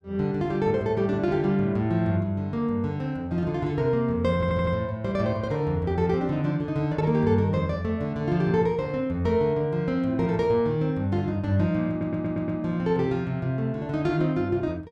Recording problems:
stutter; at 4.5 s and at 12 s

